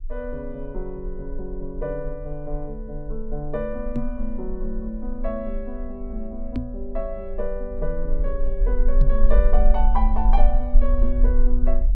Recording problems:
rumble; below 36 Hz, strongest tone 18 Hz, SNR -5 dB
microphone bump; at 4 s, at 6.5 s and at 9 s; peak +8 dB vs average level

